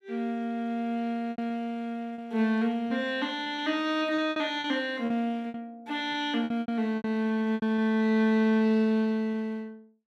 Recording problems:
packet loss; 8% of the sound replaced, filled with repeated pitch periods

